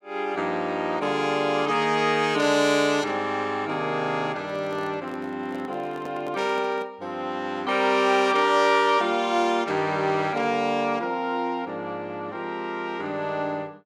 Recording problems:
handling noise; from 4.5 to 7 s; peak -10 dB vs average level

